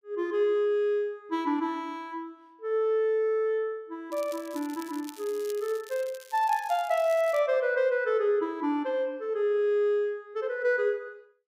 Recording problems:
crackle; from 4 to 7.5 s; loose cable, SNR 20 dB

